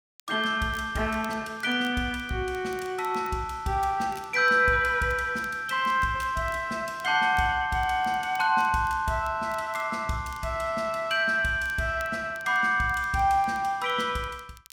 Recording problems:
crackling; vinyl, SNR 27 dB

